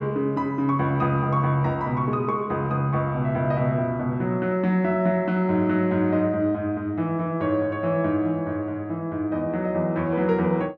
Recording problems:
none

